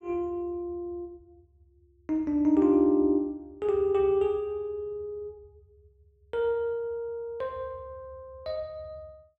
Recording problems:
none

